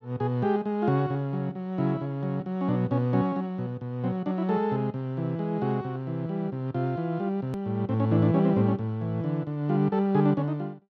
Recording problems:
edit click; at 7.5 s

